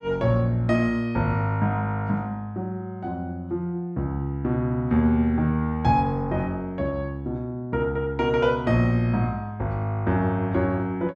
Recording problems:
none

